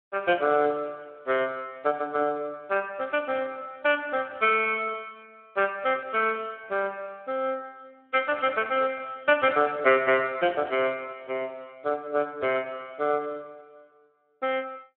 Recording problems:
telephone audio; 220 Hz to 3.1 kHz, Speex

